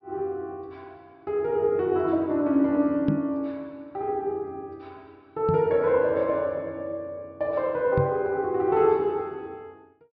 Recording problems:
treble missing; nothing above 5.5 kHz
knock on the microphone; at 3 s, at 5.5 s and at 8 s; peak +3 dB vs average level

